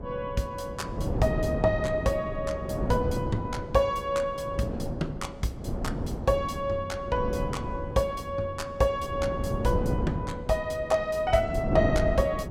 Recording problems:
wind noise; below 320 Hz, SNR 4 dB

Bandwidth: 17.5 kHz